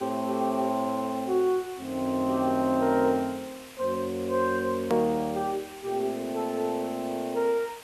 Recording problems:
hiss; SNR 18 dB
hard cut with a click; at 5 s

